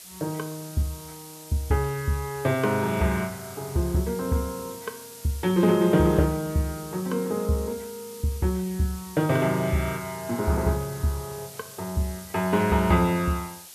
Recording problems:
hiss; slope +2 dB per octave, SNR 16 dB

